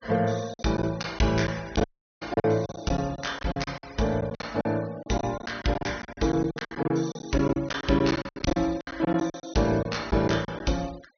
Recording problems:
treble missing; nothing above 6.4 kHz
noise reduction artefacts; signal-to-artefact ratio 21 dB
packet loss; 16% of the sound replaced, filled with silence
dropout; at 2 s

